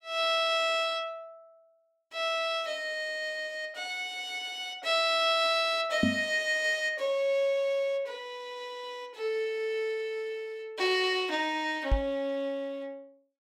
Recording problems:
microphone bump; at 6 s and at 12 s; peak +6 dB vs average level

